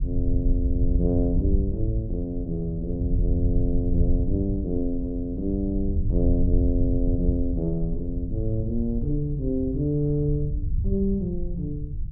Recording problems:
low-frequency rumble; below 82 Hz, SNR 1 dB

